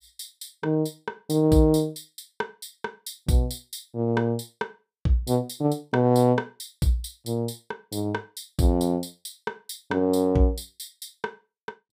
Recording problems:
none

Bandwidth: 15.5 kHz